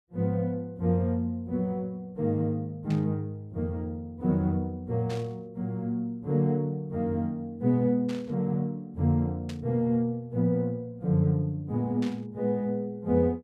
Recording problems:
burst of static; 5 times, first at 3 s; peak -10 dB vs average level

